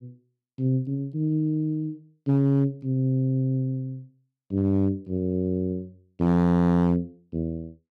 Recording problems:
distortion; hard clipping, signal-to-distortion ratio 11 dB

